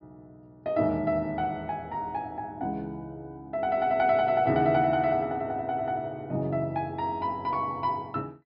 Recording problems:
low-pass filter; nothing above 5.3 kHz

